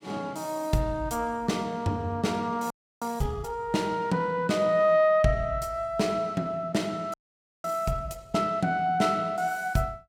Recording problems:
frozen audio; at 2.5 s and at 7 s for 0.5 s

